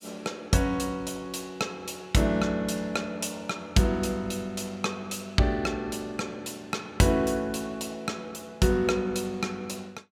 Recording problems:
none

